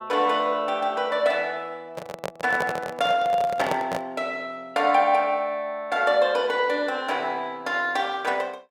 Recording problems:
handling noise; from 2 to 4 s; peak +1 dB vs average level

